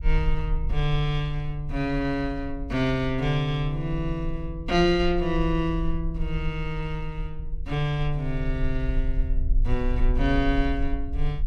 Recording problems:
rumble; below 48 Hz, SNR 5 dB

